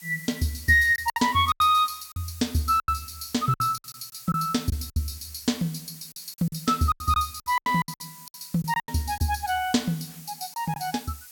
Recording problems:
background hiss; slope +3 dB per octave, SNR 18 dB
lost packets; 11% of the sound replaced, filled with silence

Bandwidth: 17 kHz